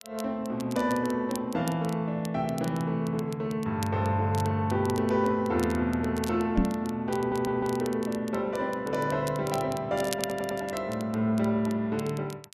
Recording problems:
crackle; vinyl, SNR 17 dB
knock on the microphone; at 6.5 s; peak +7 dB vs average level
stutter; at 7 s and at 10 s

